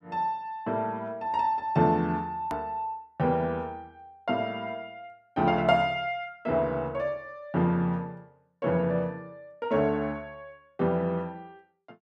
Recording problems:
click at an edit; at 2.5 s

